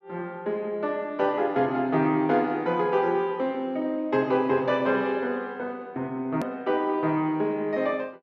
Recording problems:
hard cut with a click; at 6.5 s

